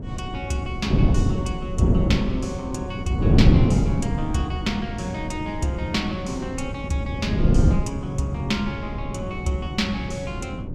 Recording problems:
electrical hum; 50 Hz, harmonics up to 600 Hz, SNR 26 dB
wind noise; below 210 Hz, SNR -3 dB

